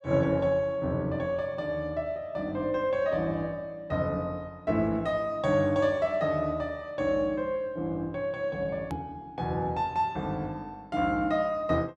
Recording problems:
hard cut with a click; at 9 s

